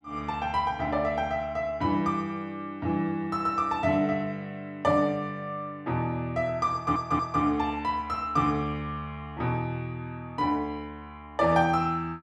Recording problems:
audio stuttering; at 6.5 s

